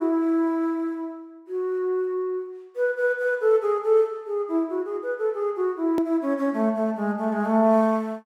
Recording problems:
hard cut with a click; at 6 s

